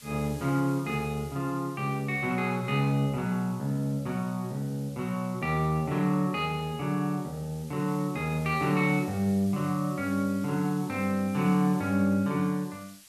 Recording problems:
hiss; slope +3 dB per octave, SNR 21 dB

